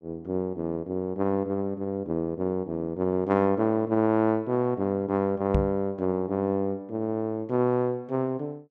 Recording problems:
microphone bump; at 5.5 s; peak +5 dB vs average level

